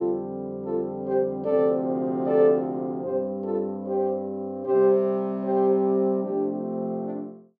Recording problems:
none

